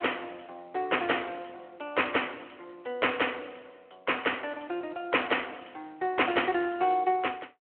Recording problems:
phone line; 300 Hz to 3.2 kHz, Speex

